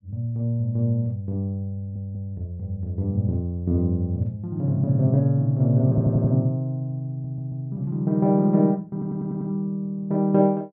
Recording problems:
audio stuttering; 4 times, first at 2 s

